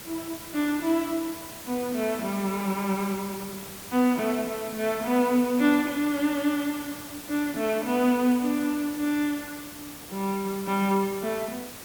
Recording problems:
hiss; slope -2 dB per octave, SNR 12 dB

